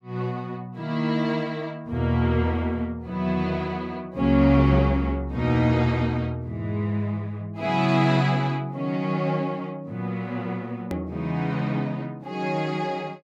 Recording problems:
click at an edit; at 11 s

